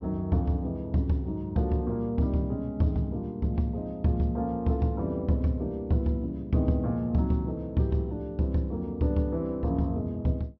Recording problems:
treble missing; nothing above 5.9 kHz

